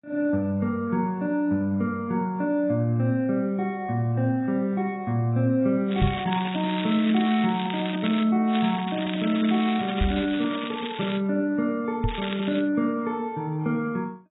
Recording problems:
lossy codec; AAC, log-spectral distance 6 dB, nothing above 3.4 kHz
crackling; from 6 to 8 s, from 8.5 to 11 s and at 12 s; loose cable, SNR 11 dB
knock on the microphone; at 6 s, at 10 s and at 12 s; peak +5 dB vs average level

